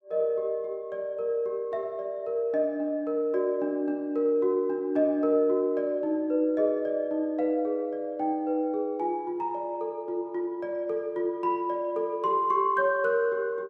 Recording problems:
none

